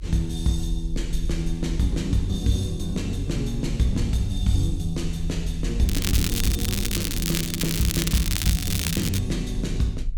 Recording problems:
low-frequency rumble; below 46 Hz, SNR 7 dB
crackle; from 6 to 9 s; loose cable, SNR 1 dB

